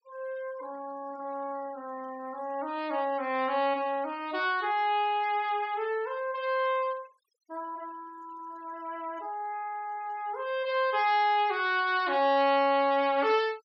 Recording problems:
noise reduction artefacts; signal-to-artefact ratio 26 dB

